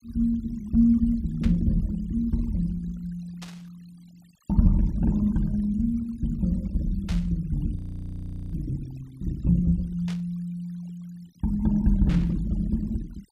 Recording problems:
denoising artefacts; signal-to-artefact ratio 26 dB
static burst; 5 times, first at 1.5 s; peak -9 dB vs average level
audio freezing; at 8 s for 1 s

